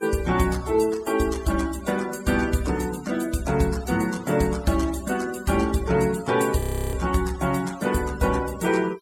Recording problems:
noise reduction artefacts; signal-to-artefact ratio 17 dB
frozen audio; at 6.5 s

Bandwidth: 17.5 kHz